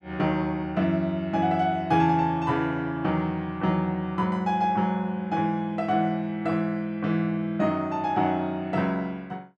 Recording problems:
none

